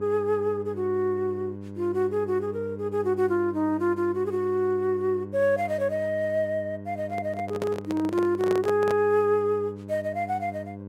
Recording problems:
hum; 50 Hz, harmonics up to 1 kHz, SNR 13 dB
microphone handling noise; from 7 to 9 s; peak -1 dB vs average level

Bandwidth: 16 kHz